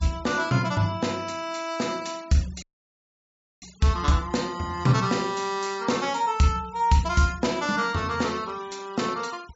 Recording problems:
treble missing; nothing above 8 kHz
noise reduction artefacts; signal-to-artefact ratio 22 dB
audio cutting out; at 2.5 s for 1 s

